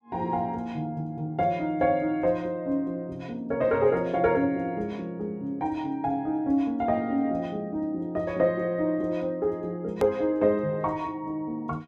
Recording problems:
hard cut with a click; at 10 s

